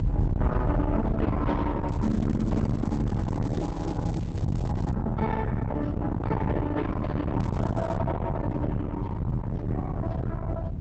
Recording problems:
lossy codec; Opus, log-spectral distance 2 dB
distorted audio; soft clipping, signal-to-distortion ratio 6 dB
rumble; below 230 Hz, SNR -1 dB
crackling; from 2 to 5 s and at 7.5 s; loose cable, SNR 22 dB

